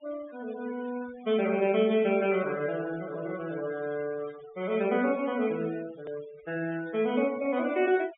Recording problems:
treble cut off; nothing above 3.7 kHz
denoising artefacts; signal-to-artefact ratio 19 dB
edit click; at 6 s

